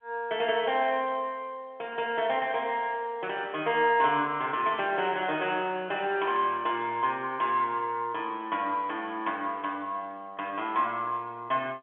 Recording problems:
phone line; 240 Hz to 3.4 kHz, G.711

